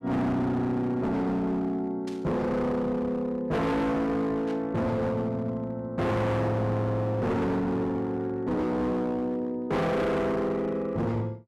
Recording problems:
distortion; hard clipping, signal-to-distortion ratio 6 dB
static burst; at 2 s and at 4.5 s; peak -13 dB vs average level

